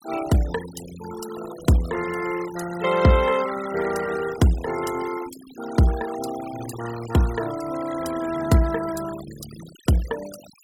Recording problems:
noise reduction artefacts; signal-to-artefact ratio 15 dB

